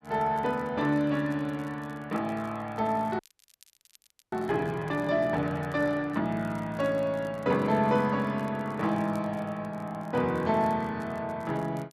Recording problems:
crackle; vinyl, SNR 30 dB
frozen audio; at 3 s for 1 s

